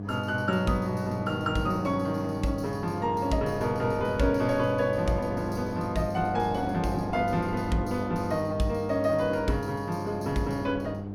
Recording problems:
electrical hum; 50 Hz, harmonics up to 800 Hz, SNR 8 dB
wind on the microphone; below 610 Hz, SNR 12 dB

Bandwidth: 17 kHz